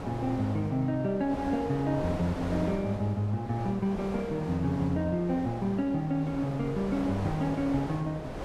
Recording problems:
wind noise; below 800 Hz, SNR 10 dB

